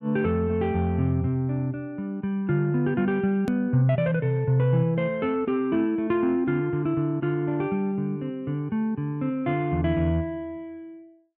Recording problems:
edit click; at 3.5 s

